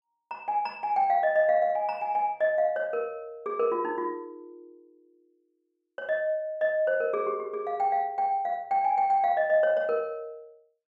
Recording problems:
none

